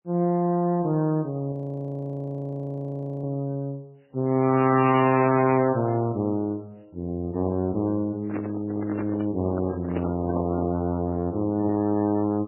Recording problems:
lossy compression; MP3, then AAC, log-spectral distance 2 dB, nothing above 2.4 kHz
distortion; soft clipping, signal-to-distortion ratio 11 dB
frozen audio; at 1.5 s for 1.5 s
handling noise; from 8 to 11 s; peak -1 dB vs average level

